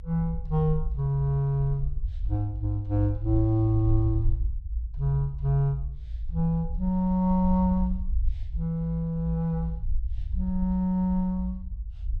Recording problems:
low-frequency rumble; below 58 Hz, SNR 7 dB

